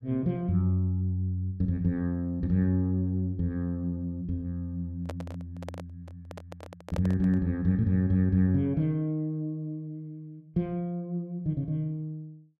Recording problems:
microphone handling noise; from 5 to 7.5 s; peak -4 dB vs average level

